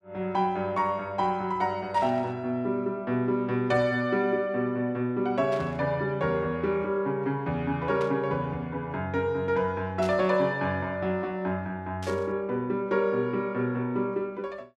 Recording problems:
static burst; 5 times, first at 2 s; peak -10 dB vs average level

